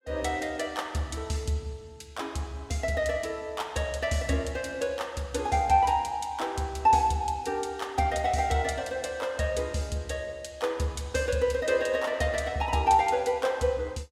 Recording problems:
none

